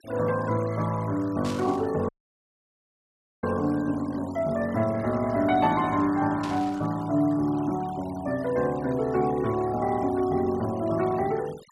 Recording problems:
denoising artefacts; signal-to-artefact ratio 20 dB
static burst; at 1.5 s and at 6.5 s; peak -8 dB vs average level
audio cutting out; at 2 s for 1.5 s

